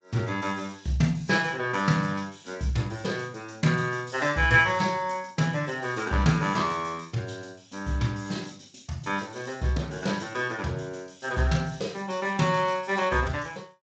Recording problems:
lossy compression; MP3, then Speex, log-spectral distance 6 dB, nothing above 7.3 kHz

